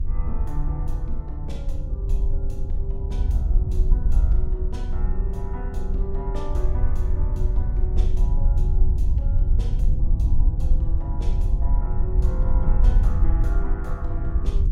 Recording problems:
hum; 60 Hz, harmonics up to 480 Hz, SNR 19 dB
wind on the microphone; below 60 Hz, SNR -12 dB

